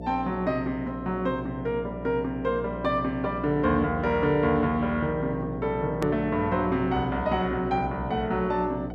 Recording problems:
hum; 60 Hz, harmonics up to 720 Hz, SNR 9 dB
edit click; at 6 s

